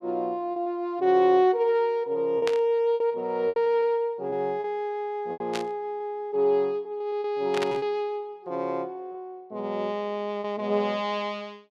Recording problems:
lost packets; 6% of the sound replaced, filled with repeated pitch periods
static burst; at 2.5 s, at 5.5 s and at 7.5 s; peak -1 dB vs average level

